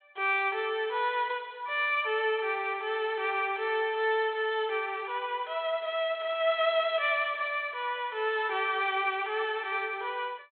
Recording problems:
low-pass filter; nothing above 4 kHz

